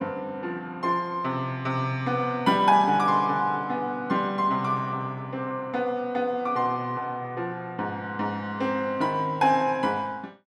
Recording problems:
none

